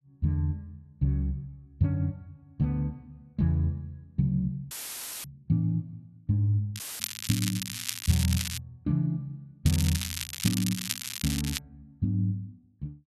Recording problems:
dropout; at 4.5 s for 0.5 s and at 7 s; filled with static
crackle; from 7 to 8.5 s and from 9.5 to 12 s; loose cable, SNR 4 dB

